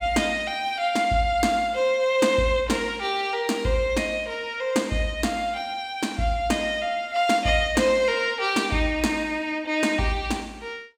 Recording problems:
none

